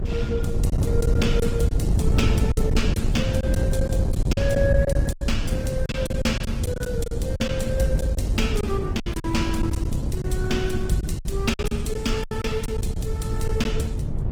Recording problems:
lossy codec; Opus, log-spectral distance 3 dB, nothing above 19 kHz
wind noise; below 130 Hz, SNR -1 dB
packet loss; 10% of the sound replaced, filled with silence

